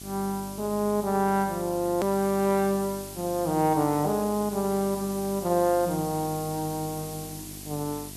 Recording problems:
hum; 50 Hz, harmonics up to 1.1 kHz, SNR 18 dB
background hiss; slope +4 dB per octave, SNR 13 dB
hard cut with a click; at 2 s

